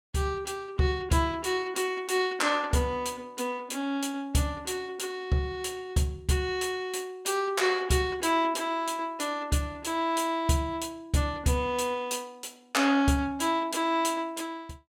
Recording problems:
none

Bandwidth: 17 kHz